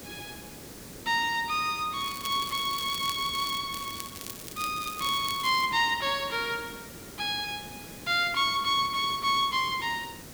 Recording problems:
background hiss; SNR 15 dB
crackle; at 2 s, from 2.5 to 3.5 s and from 3.5 to 5.5 s; loose cable, SNR 12 dB

